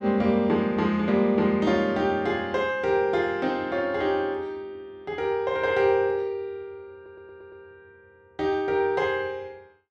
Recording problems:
audio stuttering; at 7 s

